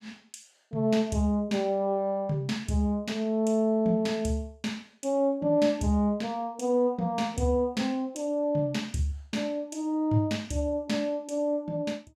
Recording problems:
none

